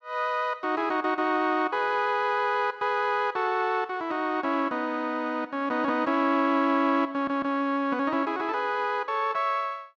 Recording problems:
stutter; at 7 s

